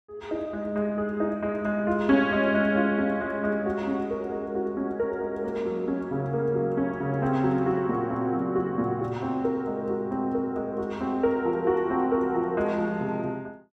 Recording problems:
none

